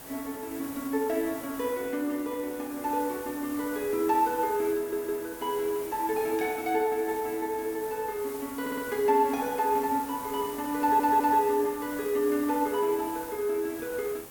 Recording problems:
hiss; slope -5 dB per octave, SNR 13 dB
stutter; at 5 s, at 8.5 s and at 11 s

